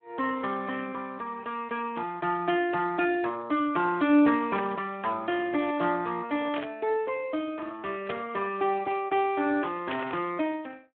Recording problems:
telephone audio; 190 Hz to 3.2 kHz, Speex
static burst; 4 times, first at 4.5 s; peak -3 dB vs average level

